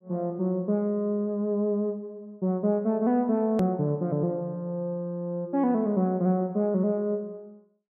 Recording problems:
hard cut with a click; at 3.5 s

